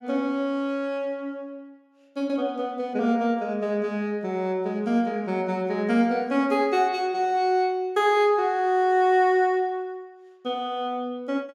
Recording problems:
none

